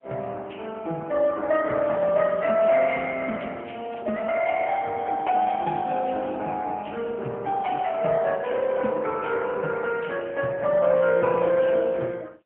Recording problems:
telephone audio; 280 Hz to 3.1 kHz, AMR-NB, then MP3
crackling; from 2 to 4.5 s and at 5.5 s; loose cable, SNR 27 dB

